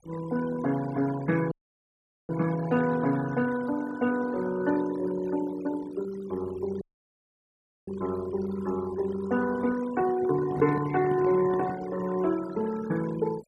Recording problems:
noise reduction artefacts; signal-to-artefact ratio 15 dB
dropout; at 1.5 s for 1 s and at 7 s for 1 s
microphone handling noise; from 10 to 12 s; peak -4 dB vs average level

